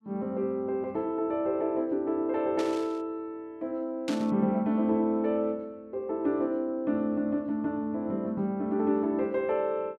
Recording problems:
burst of static; at 2.5 s and at 4 s; peak -4 dB vs average level

